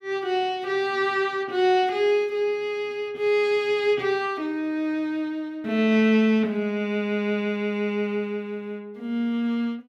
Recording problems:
none

